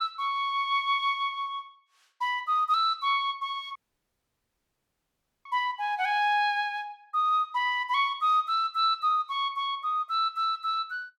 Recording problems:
audio cutting out; at 4 s for 1.5 s

